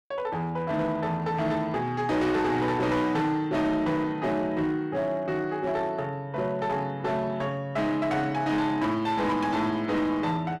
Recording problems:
distortion; hard clipping, uneven, signal-to-distortion ratio 11 dB

